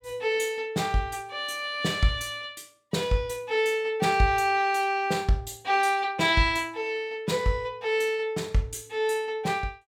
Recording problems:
none

